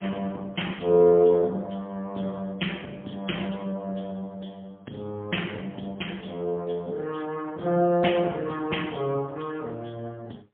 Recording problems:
telephone audio; 190 Hz to 3.3 kHz, AMR-NB, then MP3

